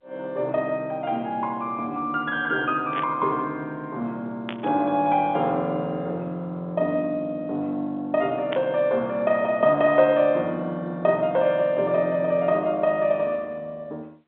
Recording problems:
telephone audio; 190 Hz to 3.8 kHz, G.711
static burst; at 3 s, at 4.5 s and at 8.5 s; peak -3 dB vs average level

